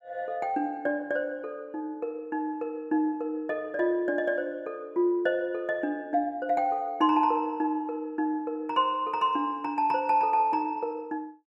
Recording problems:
none

